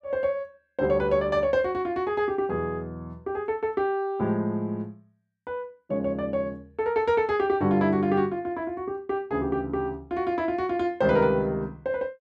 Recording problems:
none

